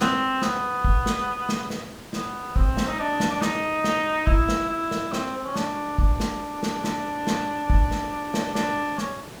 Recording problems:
background hiss; slope -5 dB per octave, SNR 16 dB

